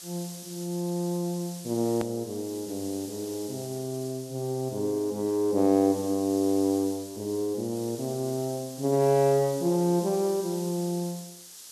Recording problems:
background hiss; SNR 14 dB
hard cut with a click; at 2 s

